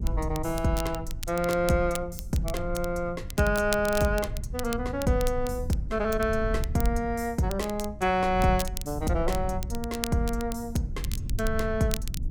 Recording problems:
rumble; below 82 Hz, SNR 9 dB
crackle; vinyl, SNR 12 dB

